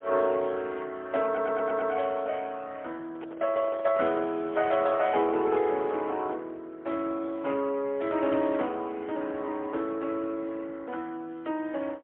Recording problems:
phone line; 280 Hz to 3.3 kHz, AMR-NB, then MP3
stutter; at 1.5 s
microphone handling noise; from 3 to 5.5 s; peak -6 dB vs average level

